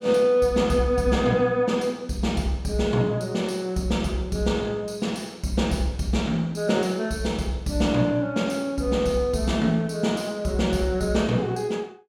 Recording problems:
none

